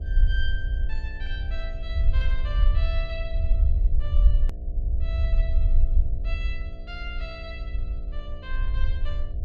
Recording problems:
electrical hum; 60 Hz, harmonics up to 720 Hz, SNR 7 dB
rumble; below 58 Hz, SNR -12 dB
click at an edit; at 4.5 s

